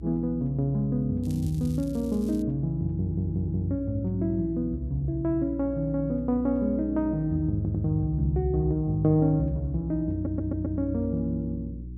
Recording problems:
hum; 60 Hz, harmonics up to 360 Hz, SNR 12 dB
crackling; from 1 to 2.5 s; loose cable, SNR 24 dB
audio stuttering; at 3 s, at 7.5 s and at 10 s

